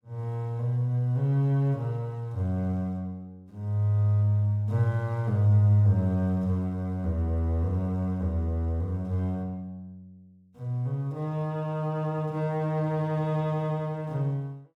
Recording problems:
none

